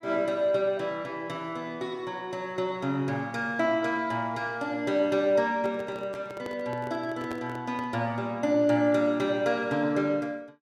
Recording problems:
handling noise; from 5.5 to 8 s; peak -7 dB vs average level

